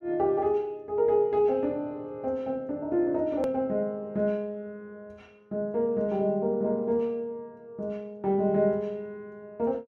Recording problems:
edit click; at 3.5 s

